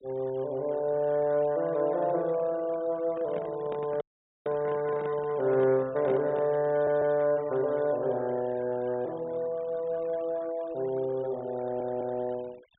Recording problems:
low-pass filter; nothing above 4 kHz
noise reduction artefacts; signal-to-artefact ratio 24 dB
handling noise; from 3 to 6.5 s; peak -6 dB vs average level
dropout; at 4 s
audio stuttering; at 6.5 s and at 12 s

